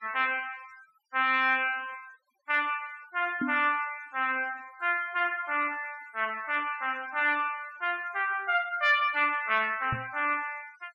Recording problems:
denoising artefacts; signal-to-artefact ratio 24 dB
knock on the microphone; at 3.5 s and at 10 s; peak 0 dB vs average level

